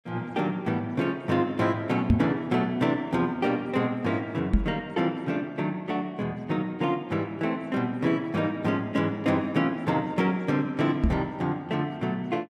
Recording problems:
knock on the microphone; at 2 s, at 4.5 s and at 11 s; peak +9 dB vs average level

